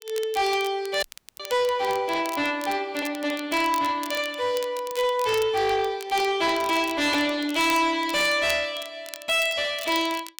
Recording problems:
distortion; soft clipping, signal-to-distortion ratio 7 dB
crackle; vinyl, SNR 16 dB
dropout; at 1 s

